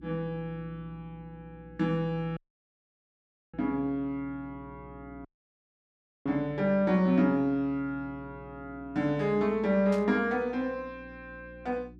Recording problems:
hum; 60 Hz, harmonics up to 360 Hz, SNR 22 dB
audio cutting out; at 2.5 s for 1 s and at 5.5 s for 1 s
static burst; at 10 s; peak -12 dB vs average level

